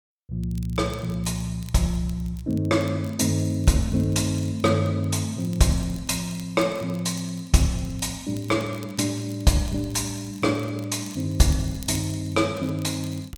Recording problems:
crackle; vinyl, SNR 24 dB

